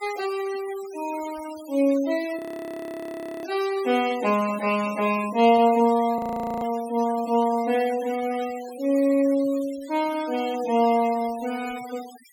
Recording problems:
denoising artefacts; signal-to-artefact ratio 17 dB
audio freezing; at 2.5 s for 1 s and at 6 s

